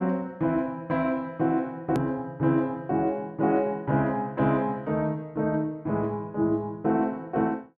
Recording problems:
hard cut with a click; at 2 s

